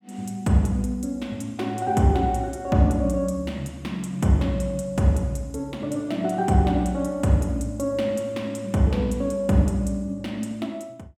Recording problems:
none

